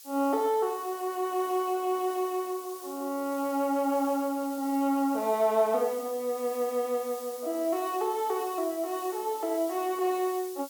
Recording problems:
background hiss; SNR 15 dB

